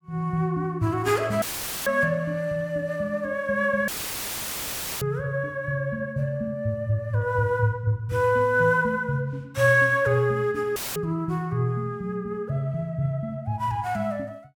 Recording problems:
dropout; at 1.5 s, at 4 s for 1 s and at 11 s; filled with static

